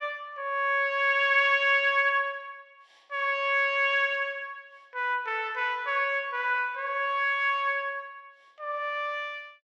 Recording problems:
none

